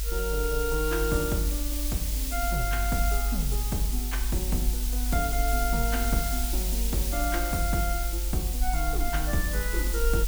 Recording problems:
background hiss; slope +3 dB per octave, SNR 2 dB
low-frequency rumble; below 50 Hz, strongest tone 48 Hz, SNR 0 dB

